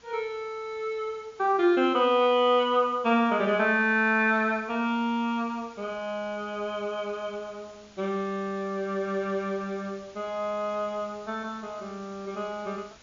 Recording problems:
treble cut off; nothing above 7.1 kHz
hiss; slope -1 dB per octave, SNR 26 dB

